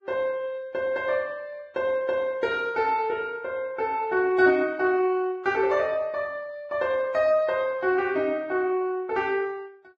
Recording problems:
lossy codec; Vorbis, log-spectral distance 2 dB

